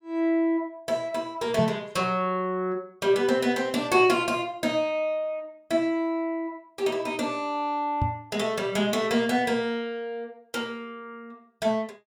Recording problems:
knock on the microphone; at 1.5 s and at 8 s; peak +3 dB vs average level

